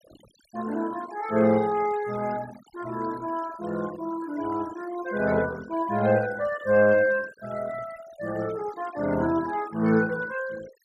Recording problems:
noise reduction artefacts; signal-to-artefact ratio 18 dB

